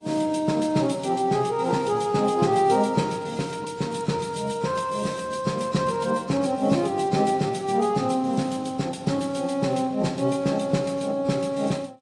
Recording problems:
lossy codec; AAC, log-spectral distance 3 dB

